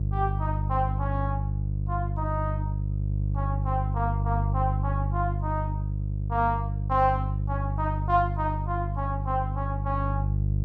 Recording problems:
electrical hum; 50 Hz, harmonics up to 350 Hz, SNR -1 dB

